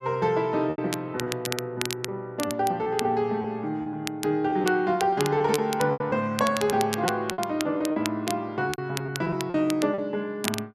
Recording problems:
crackling; vinyl, SNR 9 dB
lost packets; 9% of the sound replaced, filled with repeated pitch periods

